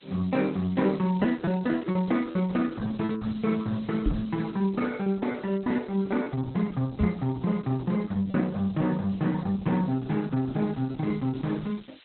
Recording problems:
lossy compression; Opus, log-spectral distance 13 dB, nothing above 3.9 kHz
hiss; SNR 27 dB
lost packets; 6% of the sound replaced, filled with repeated pitch periods
microphone thump; at 4 s and at 7 s; peak +4 dB vs average level

